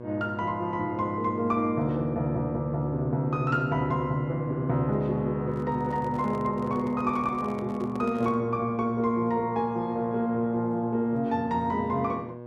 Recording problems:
hum; 60 Hz, harmonics up to 1.6 kHz, SNR 14 dB
microphone handling noise; from 5.5 to 8.5 s; peak -10 dB vs average level

